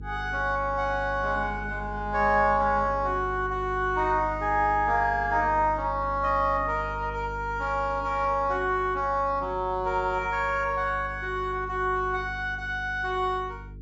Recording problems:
low-pass filter; nothing above 7.6 kHz
hum; 50 Hz, harmonics up to 450 Hz, SNR 14 dB

